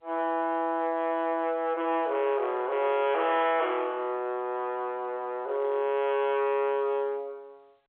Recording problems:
phone line; 300 Hz to 3.6 kHz, G.711
distortion; hard clipping, uneven, signal-to-distortion ratio 11 dB

